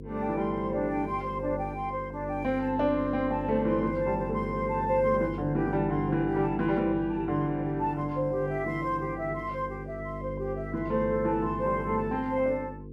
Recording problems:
hum; 50 Hz, harmonics up to 500 Hz, SNR 10 dB

